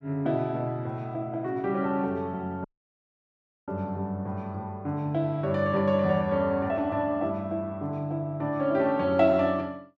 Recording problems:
audio cutting out; at 2.5 s for 1 s

